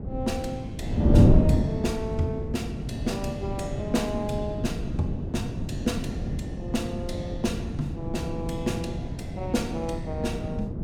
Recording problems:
wind noise; below 250 Hz, SNR -3 dB

